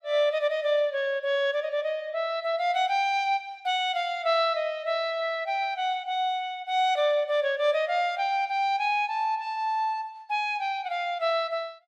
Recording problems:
none

